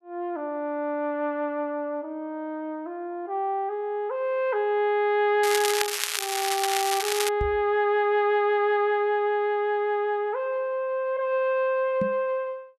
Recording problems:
crackle; from 5.5 to 7.5 s; loose cable, SNR 2 dB
microphone thump; at 7.5 s and at 12 s; peak -1 dB vs average level

